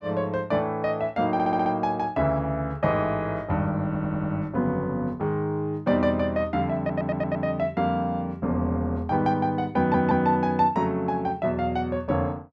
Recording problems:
stutter; 4 times, first at 1.5 s

